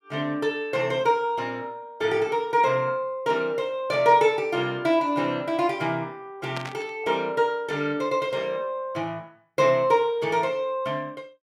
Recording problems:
static burst; at 6.5 s; peak -5 dB vs average level

